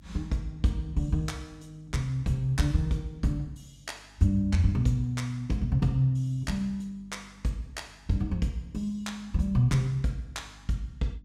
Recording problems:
hum; 50 Hz, harmonics up to 300 Hz, SNR 26 dB

